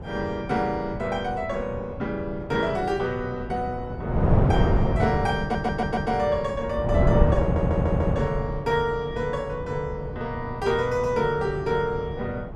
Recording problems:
wind noise; below 320 Hz, SNR 1 dB
audio stuttering; at 5.5 s and at 7.5 s

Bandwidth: 13 kHz